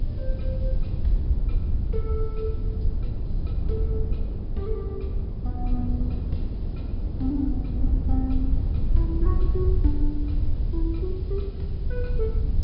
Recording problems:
treble cut off; nothing above 5.5 kHz
hum; 50 Hz, harmonics up to 1.1 kHz, SNR 26 dB
background hiss; SNR 27 dB
rumble; below 100 Hz, SNR 1 dB
wind noise; below 74 Hz, SNR -5 dB

